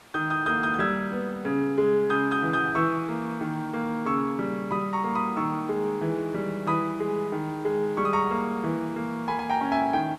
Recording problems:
background hiss; SNR 24 dB

